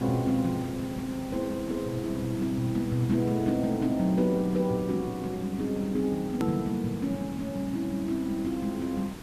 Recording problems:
hiss; slope -4 dB per octave, SNR 14 dB
click at an edit; at 6.5 s

